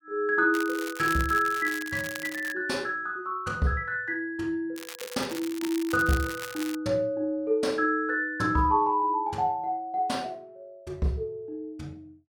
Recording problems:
crackling; from 0.5 to 2.5 s and from 5 to 7 s; loose cable, SNR 12 dB

